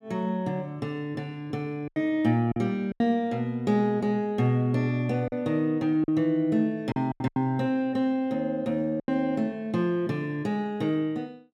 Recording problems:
packet loss; 5% of the sound replaced, filled with silence

